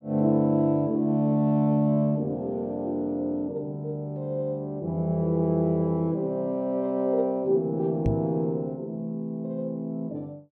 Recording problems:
microphone bump; at 8 s; peak +3 dB vs average level

